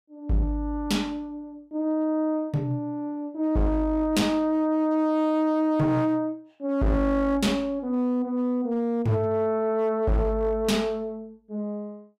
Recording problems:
distortion; hard clipping, uneven, signal-to-distortion ratio 10 dB

